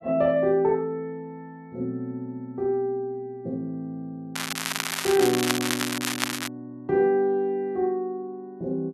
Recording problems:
crackle; from 4.5 to 6.5 s; loose cable, SNR 2 dB

